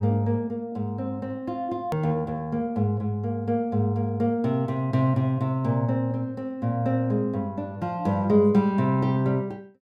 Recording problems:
click at an edit; at 2 s

